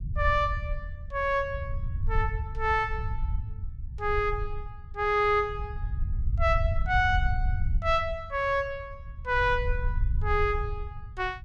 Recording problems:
rumble; below 80 Hz, SNR 5 dB

